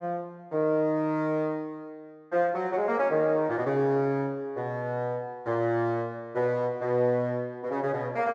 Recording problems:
none

